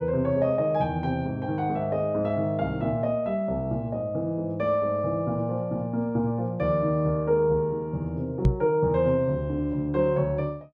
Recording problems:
knock on the microphone; at 8.5 s; peak +8 dB vs average level

